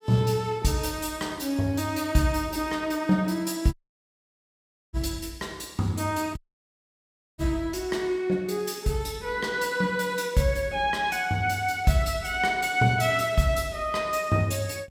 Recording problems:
audio cutting out; at 3.5 s for 1 s and at 6.5 s for 1 s

